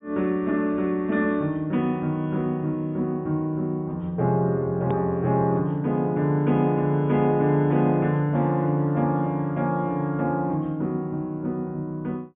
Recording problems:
treble missing; nothing above 3.7 kHz
hard cut with a click; at 5 s

